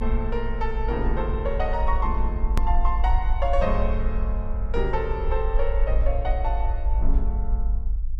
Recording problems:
low-frequency rumble; below 50 Hz, strongest tone 20 Hz, SNR -2 dB
edit click; at 2.5 s

